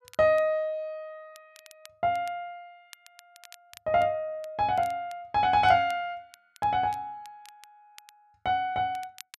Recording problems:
crackling; vinyl, SNR 26 dB

